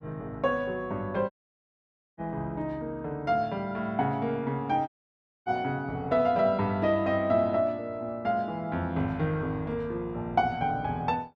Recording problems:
dropout; at 1.5 s for 1 s and at 5 s for 0.5 s

